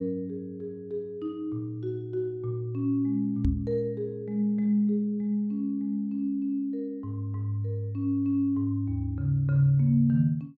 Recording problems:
knock on the microphone; at 3.5 s; peak +5 dB vs average level

